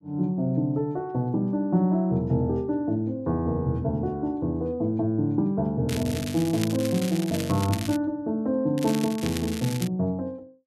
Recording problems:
crackle; from 6 to 8 s and from 9 to 10 s; loose cable, SNR 11 dB

